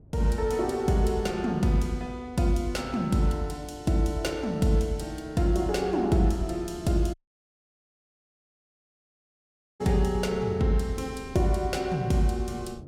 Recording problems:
wind noise; below 250 Hz, SNR 22 dB
dropout; at 7 s for 2.5 s

